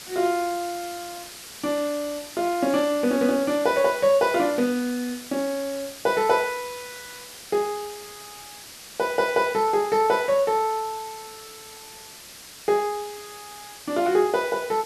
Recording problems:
background hiss; slope +1 dB per octave, SNR 15 dB

